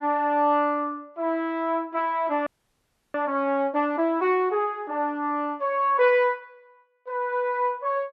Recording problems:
frozen audio; at 2.5 s for 0.5 s

